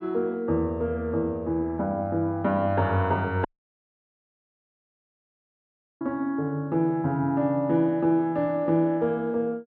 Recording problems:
dropout; at 3.5 s for 2.5 s

